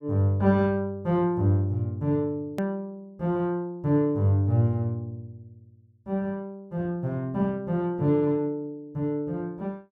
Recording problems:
hard cut with a click; at 2.5 s

